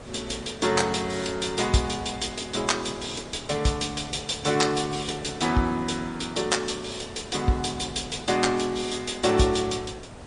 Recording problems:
codec artefacts; MP3, log-spectral distance 6 dB, nothing above 10.1 kHz
background hiss; slope -6 dB per octave, SNR 16 dB

